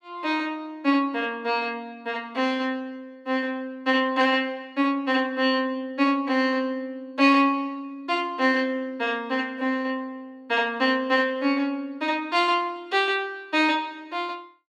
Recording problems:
none

